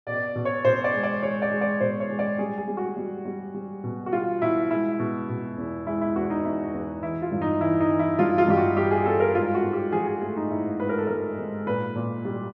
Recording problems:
none

